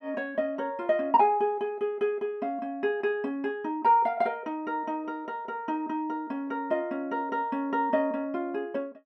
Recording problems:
none

